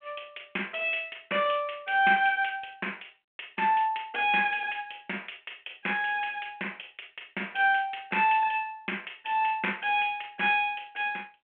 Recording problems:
telephone audio; 260 Hz to 3.3 kHz, G.726

